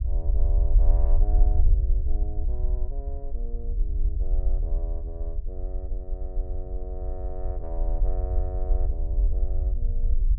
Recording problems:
low-frequency rumble; below 50 Hz, SNR -14 dB

